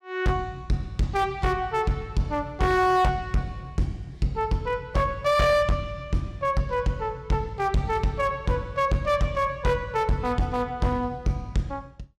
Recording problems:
distorted audio; hard clipping, signal-to-distortion ratio 11 dB

